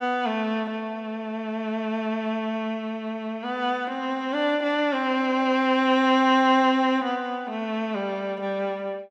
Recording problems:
none

